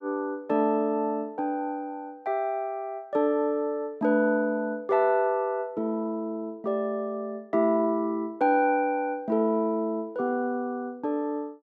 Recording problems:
none

